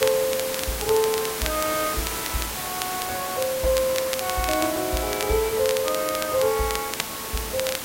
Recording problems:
background hiss; slope -2 dB per octave, SNR 4 dB
crackle; vinyl, SNR 9 dB

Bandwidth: 16 kHz